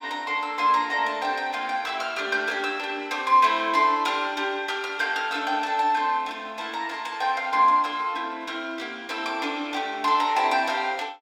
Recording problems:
none

